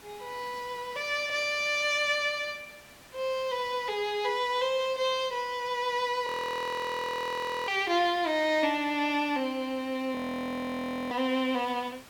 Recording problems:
background hiss; slope -2 dB per octave, SNR 22 dB
audio freezing; at 6.5 s for 1.5 s and at 10 s for 1 s

